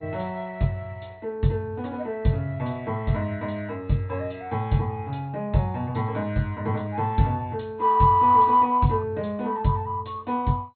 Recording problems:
lossy compression; MP2, log-spectral distance 2 dB, nothing above 4.1 kHz

